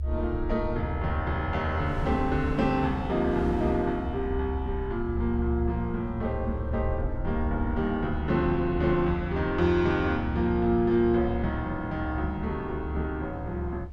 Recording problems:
low-frequency rumble; below 72 Hz, strongest tone 70 Hz, SNR 8 dB
wind noise; below 360 Hz, SNR 14 dB

